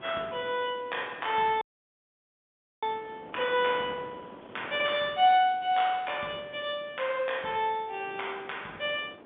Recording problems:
phone line; 280 Hz to 3.6 kHz, G.711
wind noise; below 920 Hz, SNR 20 dB
audio cutting out; at 1.5 s for 1 s

